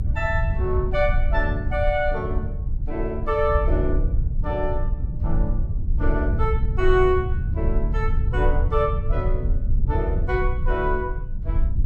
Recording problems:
rumble; below 76 Hz, SNR 0 dB

